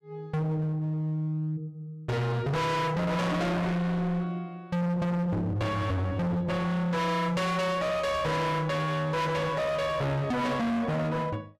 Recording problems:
distortion; hard clipping, signal-to-distortion ratio 6 dB

